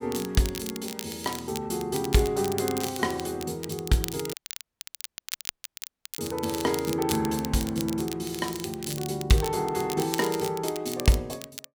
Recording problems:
crackling; vinyl, SNR 9 dB
audio cutting out; at 4.5 s for 2 s

